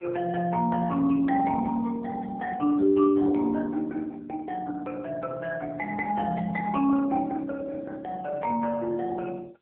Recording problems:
phone line; 240 Hz to 2.6 kHz, AMR-NB

